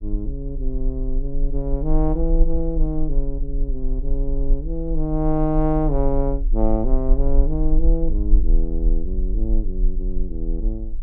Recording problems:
rumble; below 38 Hz, strongest tone 20 Hz, SNR -1 dB

